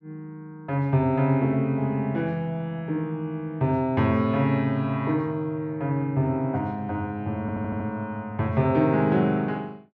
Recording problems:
low-pass filter; nothing above 7.9 kHz
audio stuttering; at 7.5 s

